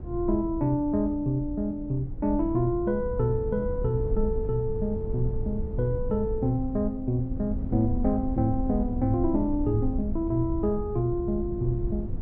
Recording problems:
rumble; below 92 Hz, SNR 7 dB

